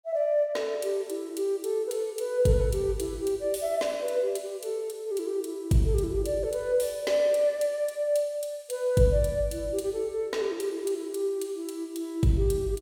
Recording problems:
none

